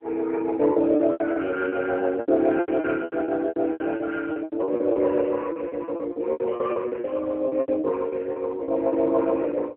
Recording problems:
telephone audio; 260 Hz to 3.1 kHz, AMR-NB
lost packets; 18% of the sound replaced, filled with repeated pitch periods

